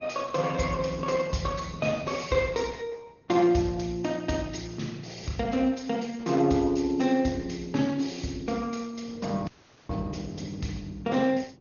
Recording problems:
treble cut off; nothing above 6.7 kHz
codec artefacts; Opus, log-spectral distance 4 dB
wind on the microphone; below 330 Hz, SNR 17 dB
audio cutting out; at 9.5 s

